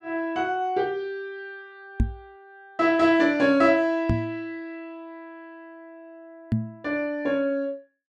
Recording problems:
knock on the microphone; at 2 s, at 4 s and at 6.5 s; peak +5 dB vs average level

